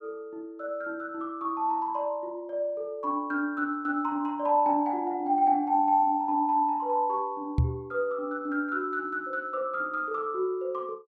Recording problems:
microphone bump; at 7.5 s; peak +7 dB vs average level

